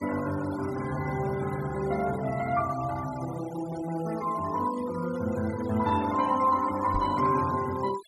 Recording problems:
denoising artefacts; signal-to-artefact ratio 17 dB
microphone bump; at 7 s; peak -3 dB vs average level

